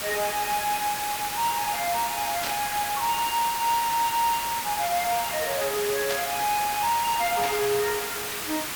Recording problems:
distortion; soft clipping, signal-to-distortion ratio 11 dB
background hiss; slope 0 dB per octave, SNR 3 dB
burst of static; at 2.5 s, at 6 s and at 7.5 s; peak -1 dB vs average level

